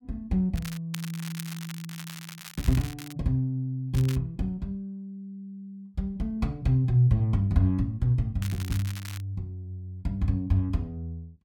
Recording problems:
crackling; 4 times, first at 0.5 s; loose cable, SNR 14 dB

